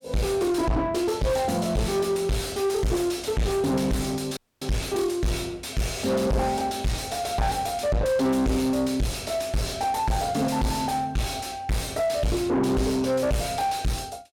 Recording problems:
distortion; soft clipping, signal-to-distortion ratio 6 dB
audio cutting out; at 4.5 s

